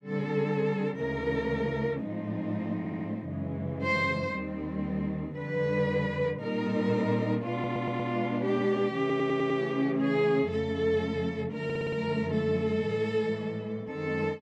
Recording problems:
audio stuttering; 4 times, first at 3 s

